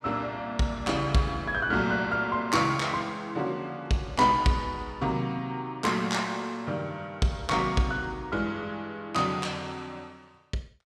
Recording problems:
none

